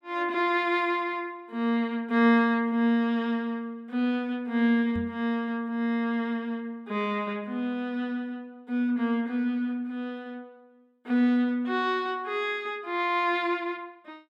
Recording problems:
knock on the microphone; at 5 s; peak -4 dB vs average level

